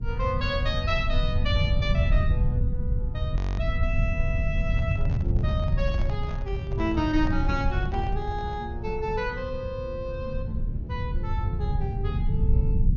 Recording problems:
treble missing; nothing above 6.8 kHz
hum; 50 Hz, harmonics up to 500 Hz, SNR 19 dB
rumble; below 100 Hz, SNR -3 dB
audio freezing; at 3.5 s
handling noise; from 4.5 to 8.5 s; peak -4 dB vs average level

